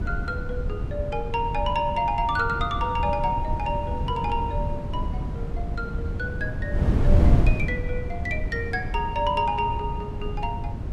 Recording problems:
wind noise; below 130 Hz, SNR 0 dB

